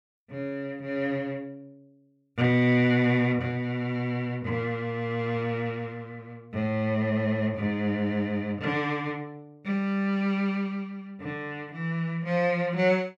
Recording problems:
none

